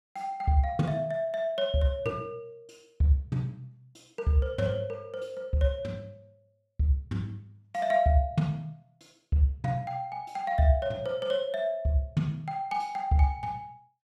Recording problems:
none

